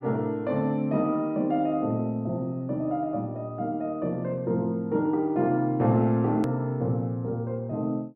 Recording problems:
edit click; at 6.5 s

